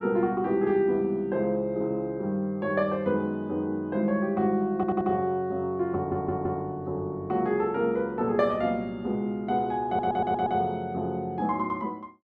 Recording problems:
stutter; at 5 s, at 6 s and at 10 s

